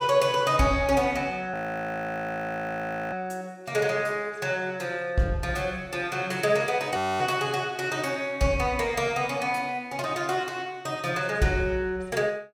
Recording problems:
audio freezing; at 1.5 s for 1.5 s and at 7 s

